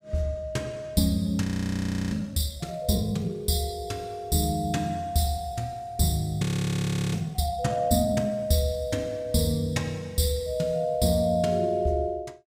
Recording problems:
frozen audio; at 1.5 s for 0.5 s and at 6.5 s for 0.5 s

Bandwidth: 15.5 kHz